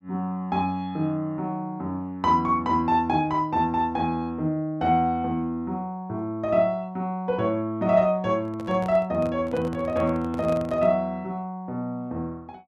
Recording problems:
handling noise; from 8.5 to 11 s; peak -8 dB vs average level

